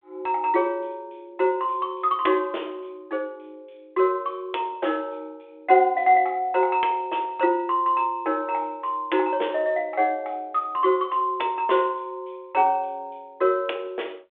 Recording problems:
telephone audio; 280 Hz to 3.6 kHz, G.726

